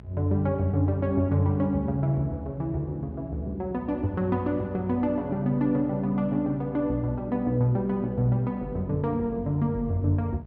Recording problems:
electrical hum; 60 Hz, harmonics up to 840 Hz, SNR 19 dB

